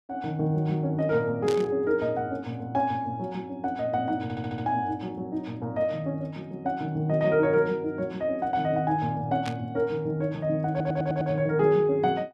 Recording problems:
static burst; at 1.5 s and at 9.5 s; peak -6 dB vs average level
audio stuttering; at 4 s and at 11 s

